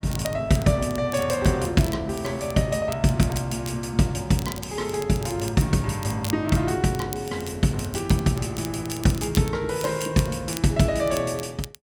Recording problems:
crackle; vinyl, SNR 16 dB

